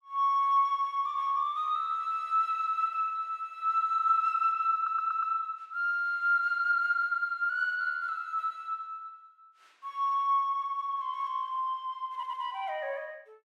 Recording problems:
audio stuttering; at 5 s and at 12 s

